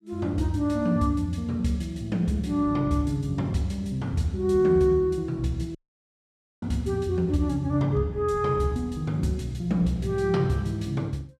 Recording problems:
audio cutting out; at 6 s for 1 s

